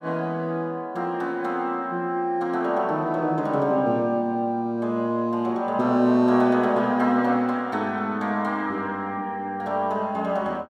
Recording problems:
none

